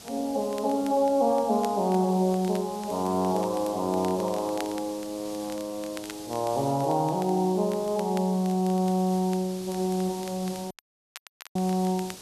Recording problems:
background hiss; SNR 16 dB
crackle; vinyl, SNR 22 dB
audio cutting out; at 11 s for 1 s

